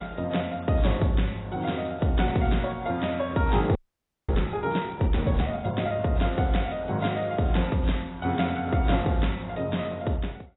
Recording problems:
lossy codec; AAC, log-spectral distance 5 dB, nothing above 3.8 kHz
frozen audio; at 4 s for 0.5 s

